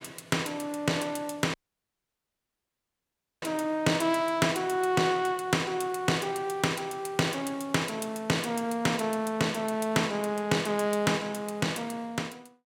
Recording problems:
dropout; at 1.5 s for 2 s

